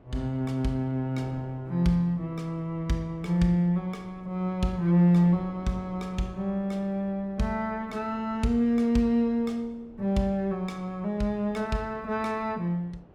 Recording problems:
wind on the microphone; below 470 Hz, SNR 24 dB

